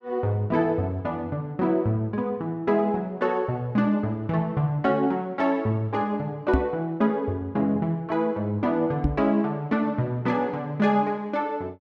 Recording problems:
knock on the microphone; at 6.5 s and at 9 s; peak +6 dB vs average level

